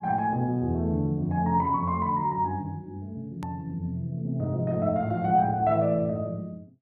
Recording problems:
hard cut with a click; at 3.5 s

